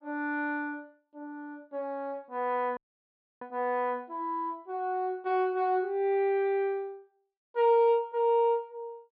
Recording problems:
treble missing; nothing above 5.5 kHz
audio cutting out; at 3 s for 0.5 s

